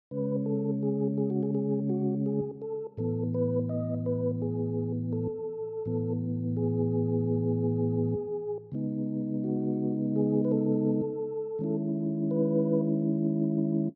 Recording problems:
none

